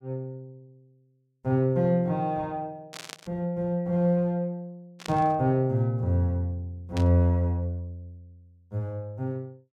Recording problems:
static burst; at 3 s, at 5 s and at 7 s; peak -7 dB vs average level

